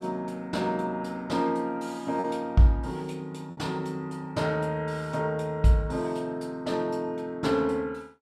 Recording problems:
lost packets; 1.2% of the sound replaced, filled with repeated pitch periods

